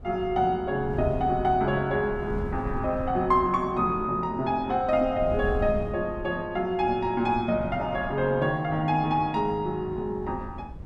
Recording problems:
wind noise; below 140 Hz, SNR 13 dB

